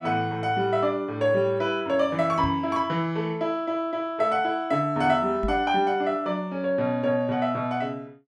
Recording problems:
knock on the microphone; at 2.5 s and at 5.5 s; peak -2 dB vs average level

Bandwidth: 14 kHz